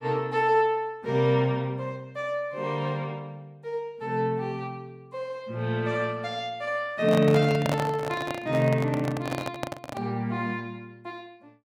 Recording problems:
microphone handling noise; from 7 to 10 s; peak +2 dB vs average level

